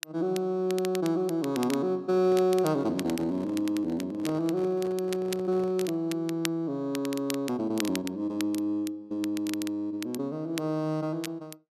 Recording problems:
crackling; vinyl, SNR 13 dB
microphone handling noise; from 2 to 6 s; peak -7 dB vs average level

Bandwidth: 13.5 kHz